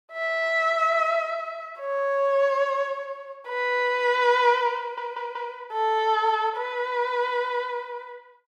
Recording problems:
stutter; at 5 s

